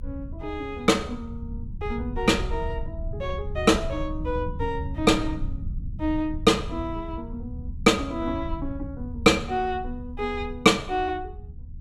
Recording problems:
rumble; below 96 Hz, SNR 10 dB

